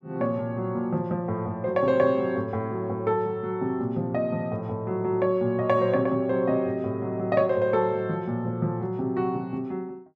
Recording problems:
none

